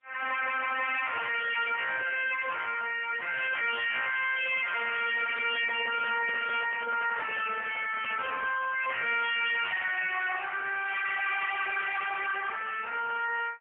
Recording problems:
phone line; 410 Hz to 3.1 kHz, AMR-NB, then MP3
distorted audio; hard clipping, uneven, signal-to-distortion ratio 4 dB
microphone handling noise; from 5 to 8.5 s; peak -6 dB vs average level

